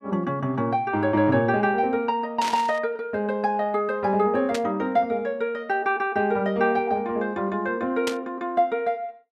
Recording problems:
burst of static; at 2.5 s, at 4.5 s and at 8 s; peak -1 dB vs average level

